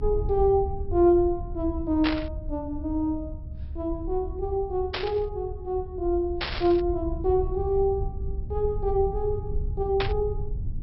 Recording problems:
low-pass filter; nothing above 5.5 kHz
low-frequency rumble; below 82 Hz, SNR 8 dB
burst of static; 4 times, first at 2 s; peak +2 dB vs average level

